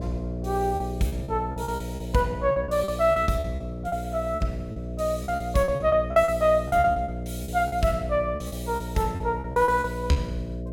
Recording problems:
hum; 60 Hz, harmonics up to 660 Hz, SNR 8 dB
lost packets; 15% of the sound replaced, filled with repeated pitch periods

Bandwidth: 18 kHz